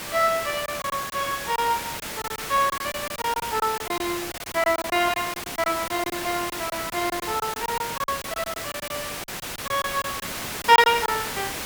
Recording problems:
background hiss; slope -2 dB per octave, SNR 6 dB
packet loss; 12% of the sound replaced, filled with silence

